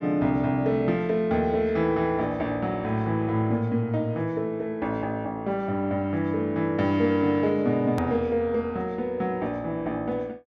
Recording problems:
edit click; at 8 s

